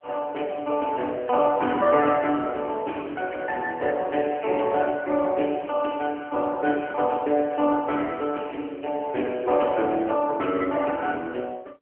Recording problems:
telephone audio; 240 Hz to 3.1 kHz, AMR-NB

